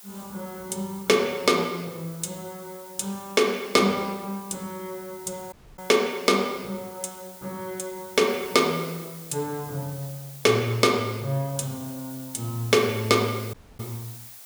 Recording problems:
background hiss; SNR 17 dB
audio cutting out; at 5.5 s and at 14 s

